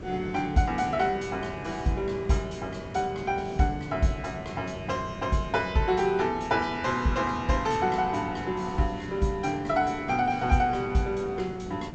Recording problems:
treble cut off; nothing above 8 kHz
hiss; slope -8 dB per octave, SNR 13 dB

